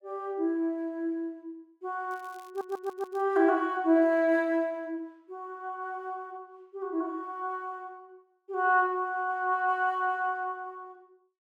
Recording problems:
crackling; from 2 to 3 s; loose cable, SNR 30 dB
audio stuttering; at 2.5 s

